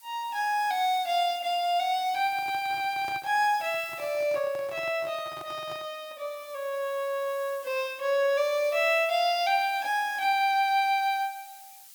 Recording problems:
hiss; slope +4 dB per octave, SNR 21 dB
handling noise; from 2 to 6 s; peak -11 dB vs average level

